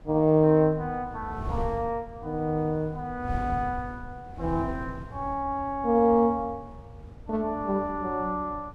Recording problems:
wind on the microphone; below 140 Hz, SNR 14 dB

